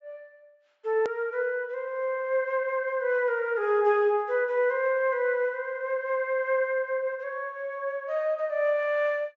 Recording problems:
treble cut off; nothing above 8 kHz
click at an edit; at 1 s

